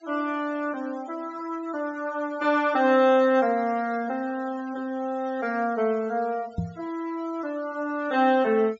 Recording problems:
low-pass filter; nothing above 7.5 kHz
noise reduction artefacts; signal-to-artefact ratio 25 dB
microphone bump; at 6.5 s; peak +1 dB vs average level

